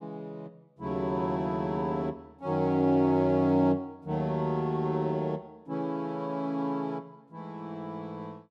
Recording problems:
none

